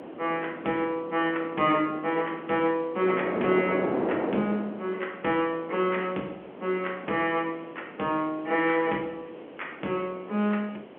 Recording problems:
telephone audio; 240 Hz to 3.3 kHz, G.711
hiss; SNR 30 dB
wind noise; below 660 Hz, SNR 8 dB

